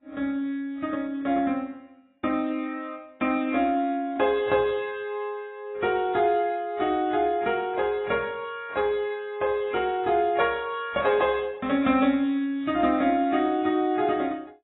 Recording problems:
codec artefacts; AAC, log-spectral distance 2 dB, nothing above 3.2 kHz

